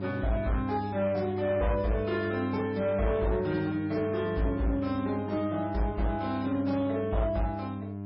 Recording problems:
codec artefacts; MP3, log-spectral distance 3 dB, nothing above 5.2 kHz
distortion; hard clipping, uneven, signal-to-distortion ratio 12 dB
electrical hum; 50 Hz, harmonics up to 1.1 kHz, SNR 7 dB

